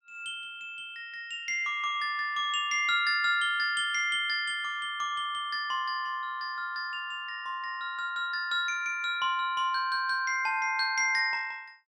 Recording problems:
none

